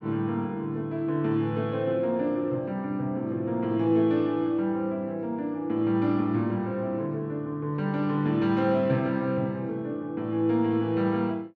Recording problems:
none

